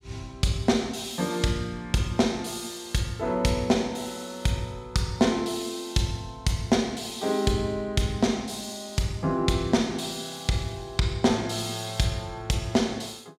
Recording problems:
none

